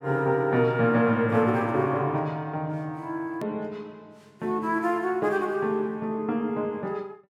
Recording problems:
hard cut with a click; at 3.5 s

